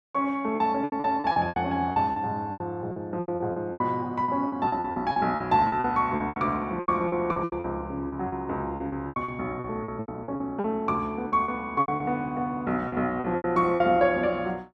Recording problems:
packet loss; 17% of the sound replaced, filled with repeated pitch periods

